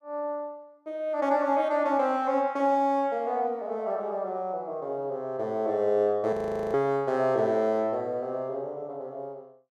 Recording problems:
audio freezing; at 6.5 s

